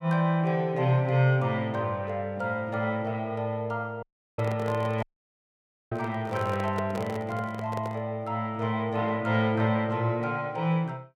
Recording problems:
dropout; at 4 s and at 5 s for 1 s
handling noise; from 4.5 to 8 s; peak -2 dB vs average level

